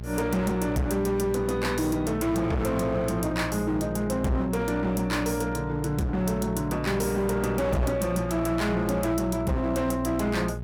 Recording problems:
distorted audio; hard clipping, signal-to-distortion ratio 8 dB
hum; 60 Hz, harmonics up to 660 Hz, SNR 9 dB

